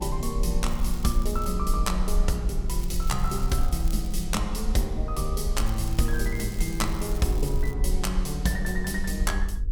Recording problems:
electrical hum; 50 Hz, harmonics up to 500 Hz, SNR 15 dB
rumble; below 50 Hz, SNR 1 dB
crackling; at 0.5 s, from 2.5 to 4 s and from 5.5 to 7.5 s; loose cable, SNR 17 dB

